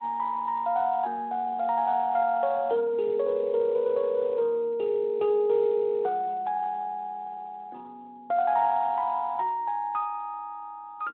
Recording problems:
telephone audio; 280 Hz to 3.6 kHz, Speex

